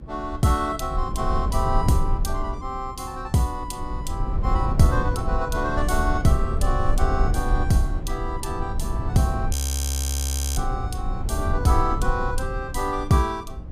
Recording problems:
hum; 60 Hz, harmonics up to 360 Hz, SNR 20 dB
low-frequency rumble; below 76 Hz, SNR 2 dB
audio freezing; at 9.5 s for 1 s

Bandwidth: 15 kHz